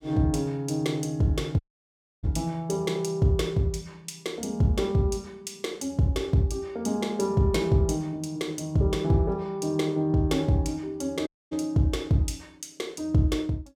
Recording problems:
audio cutting out; at 1.5 s for 0.5 s and at 11 s

